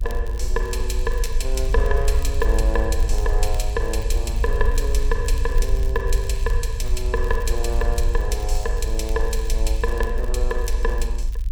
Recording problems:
rumble; below 52 Hz, strongest tone 28 Hz, SNR -3 dB
crackling; vinyl, SNR 19 dB

